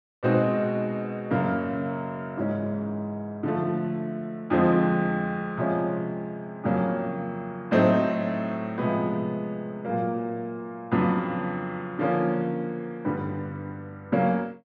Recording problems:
none

